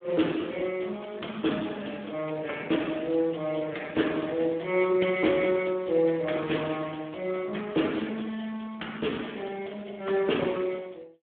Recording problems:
phone line; 190 Hz to 3.5 kHz, Speex

